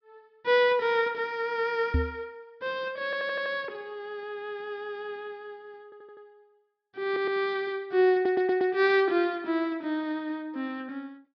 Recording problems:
treble cut off; nothing above 5.5 kHz
knock on the microphone; at 2 s; peak +5 dB vs average level
stutter; 4 times, first at 3 s

